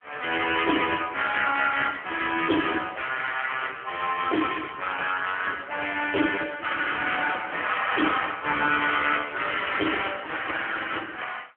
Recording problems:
phone line; 260 Hz to 3.3 kHz, AMR-NB

